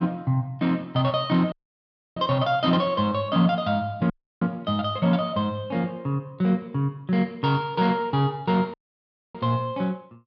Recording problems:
dropout; at 1.5 s for 0.5 s, at 4 s and at 8.5 s for 0.5 s

